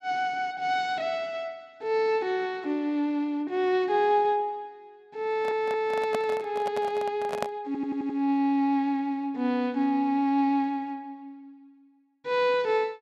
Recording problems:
audio stuttering; at 5.5 s and at 7.5 s
handling noise; from 5.5 to 7.5 s; peak 0 dB vs average level

